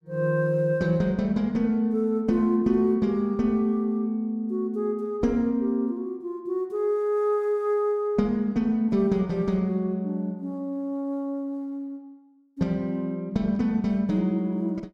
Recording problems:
none

